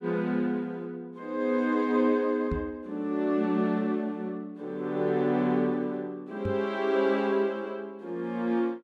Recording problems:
microphone thump; at 2.5 s and at 6.5 s; peak -1 dB vs average level

